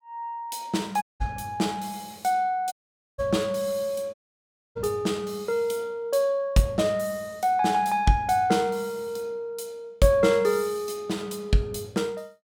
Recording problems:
dropout; at 1 s, at 2.5 s and at 4 s for 0.5 s

